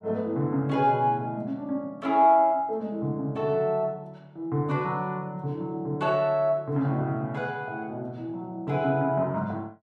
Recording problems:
none

